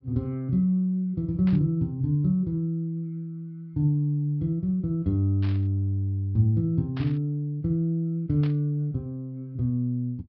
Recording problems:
low-pass filter; nothing above 5.5 kHz
burst of static; 4 times, first at 1.5 s; peak -12 dB vs average level

